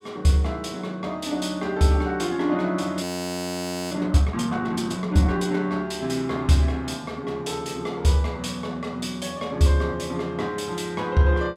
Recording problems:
audio freezing; at 3 s for 1 s

